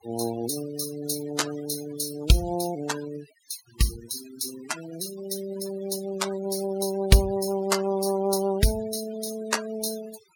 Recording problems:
denoising artefacts; signal-to-artefact ratio 12 dB

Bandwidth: 17.5 kHz